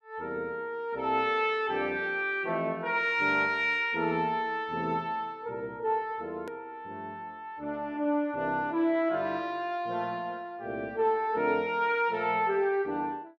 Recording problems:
edit click; at 6.5 s

